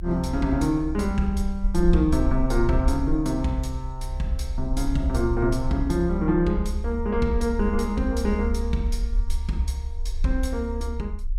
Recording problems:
rumble; below 68 Hz, SNR 5 dB

